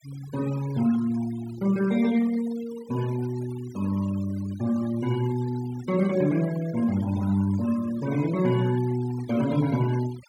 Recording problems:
noise reduction artefacts; signal-to-artefact ratio 18 dB

